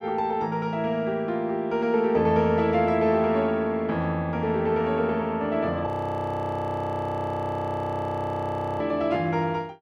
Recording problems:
audio freezing; at 6 s for 3 s

